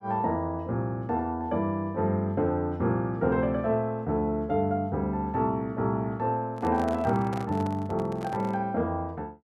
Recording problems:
handling noise; from 6.5 to 8.5 s; peak -6 dB vs average level

